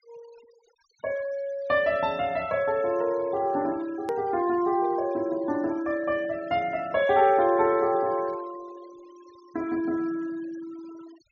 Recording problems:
treble cut off; nothing above 6.8 kHz
denoising artefacts; signal-to-artefact ratio 23 dB
edit click; at 4 s

